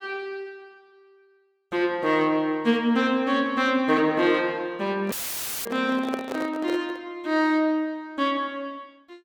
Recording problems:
handling noise; from 5 to 7 s; peak -2 dB vs average level
dropout; at 5 s for 0.5 s; filled with static

